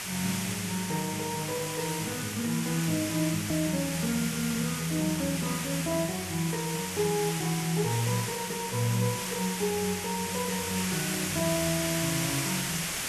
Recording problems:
hiss; SNR 2 dB
click at an edit; at 3.5 s

